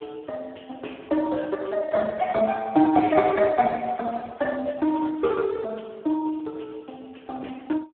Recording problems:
phone line; 260 Hz to 2.2 kHz, Speex

